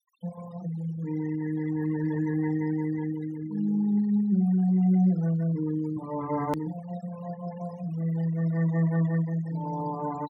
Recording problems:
denoising artefacts; signal-to-artefact ratio 16 dB
edit click; at 6.5 s

